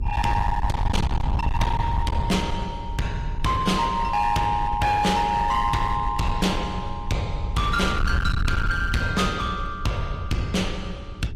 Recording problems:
lossy compression; AAC, log-spectral distance 2 dB, nothing above 15.1 kHz
distorted audio; hard clipping, signal-to-distortion ratio 7 dB
hum; 60 Hz, harmonics up to 420 Hz, SNR 19 dB
wind noise; below 100 Hz, SNR 5 dB

